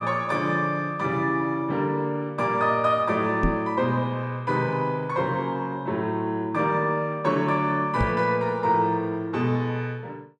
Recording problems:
knock on the microphone; at 3.5 s and at 8 s; peak +4 dB vs average level

